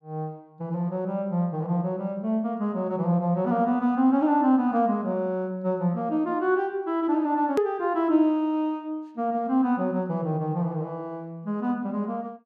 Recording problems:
edit click; at 7.5 s

